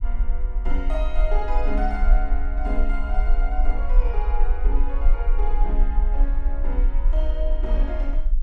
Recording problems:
low-frequency rumble; below 40 Hz, SNR -8 dB

